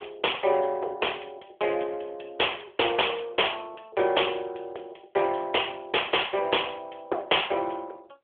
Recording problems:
phone line; 320 Hz to 3.5 kHz, AMR-NB

